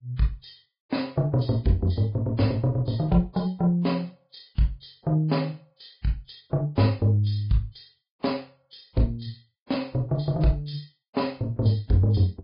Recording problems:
low-pass filter; nothing above 5 kHz
lossy compression; Vorbis, log-spectral distance 4 dB

